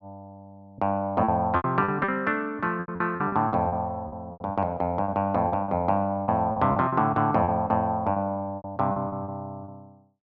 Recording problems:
lost packets; 13% of the sound replaced, filled with repeated pitch periods

